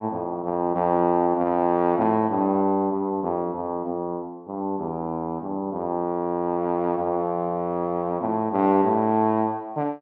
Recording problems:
none

